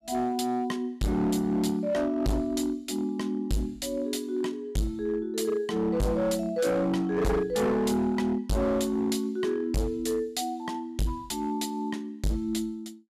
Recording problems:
distortion; hard clipping, signal-to-distortion ratio 6 dB

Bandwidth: 15 kHz